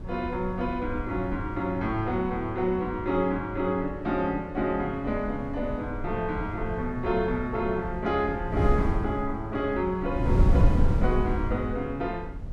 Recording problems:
wind on the microphone; below 120 Hz, SNR 3 dB

